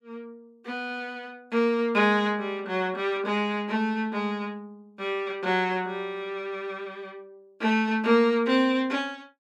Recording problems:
none

